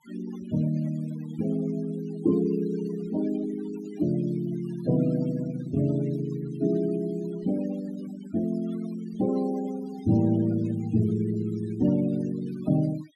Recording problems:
noise reduction artefacts; signal-to-artefact ratio 18 dB

